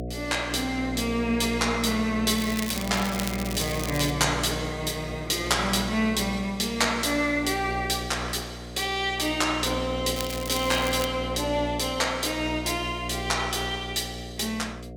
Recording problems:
hum; 60 Hz, harmonics up to 720 Hz, SNR 9 dB
crackle; from 2.5 to 4 s and at 10 s; loose cable, SNR 9 dB

